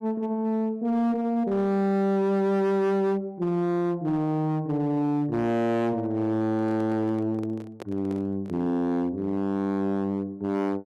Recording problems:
distorted audio; hard clipping, signal-to-distortion ratio 11 dB
handling noise; from 6.5 to 8.5 s; peak -9 dB vs average level

